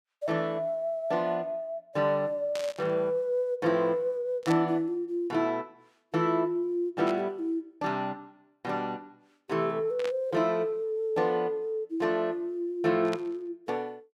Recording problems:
burst of static; 5 times, first at 2.5 s; peak -5 dB vs average level

